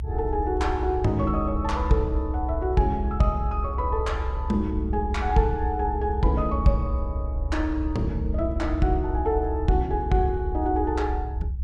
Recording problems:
low-frequency rumble; below 76 Hz, strongest tone 64 Hz, SNR 4 dB

